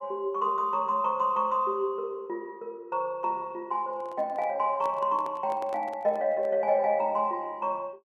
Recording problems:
microphone handling noise; from 4 to 6.5 s; peak -10 dB vs average level

